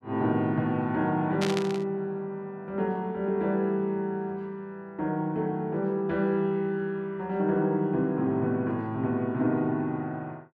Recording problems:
burst of static; at 1.5 s; peak 0 dB vs average level

